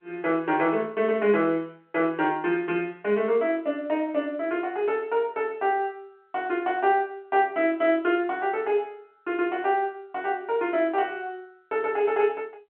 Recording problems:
phone line; 240 Hz to 3.2 kHz, G.711

